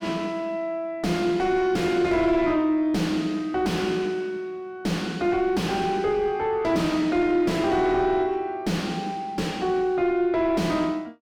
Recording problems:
distortion; soft clipping, signal-to-distortion ratio 6 dB

